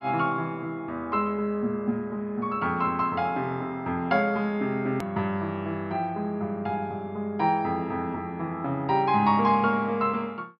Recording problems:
treble cut off; nothing above 5.5 kHz
edit click; at 5 s

